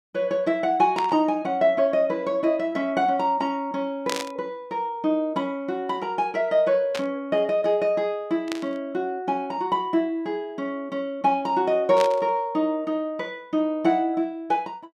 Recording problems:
static burst; 5 times, first at 1 s; peak -1 dB vs average level

